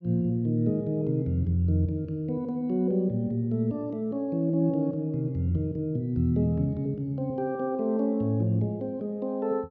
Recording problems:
none

